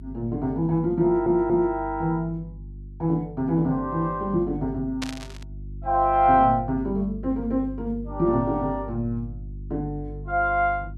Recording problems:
hum; 50 Hz, harmonics up to 350 Hz, SNR 15 dB
stutter; at 1 s
burst of static; at 5 s; peak -3 dB vs average level

